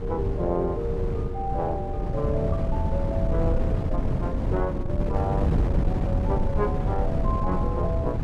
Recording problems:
wind noise; below 170 Hz, SNR -4 dB

